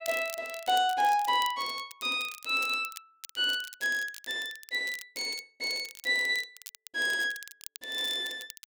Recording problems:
crackling; vinyl, SNR 16 dB

